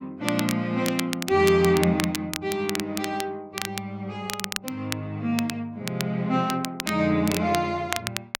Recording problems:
crackling; vinyl, SNR 8 dB

